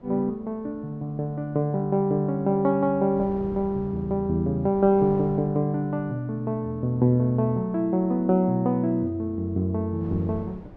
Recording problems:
wind noise; below 450 Hz, SNR 21 dB

